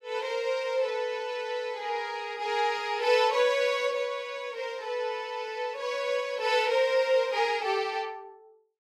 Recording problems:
none

